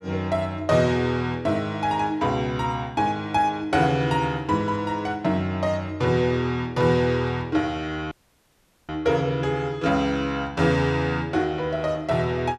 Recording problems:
dropout; at 8 s for 1 s

